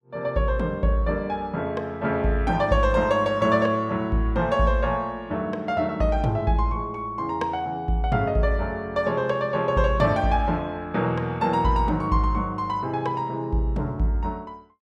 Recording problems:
none

